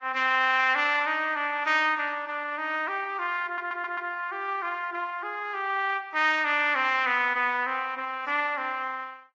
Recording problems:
lossy compression; Vorbis, log-spectral distance 2 dB
stutter; at 3.5 s

